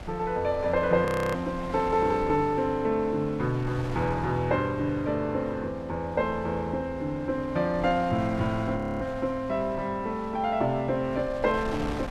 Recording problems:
wind noise; below 790 Hz, SNR 14 dB
frozen audio; at 1 s and at 9 s

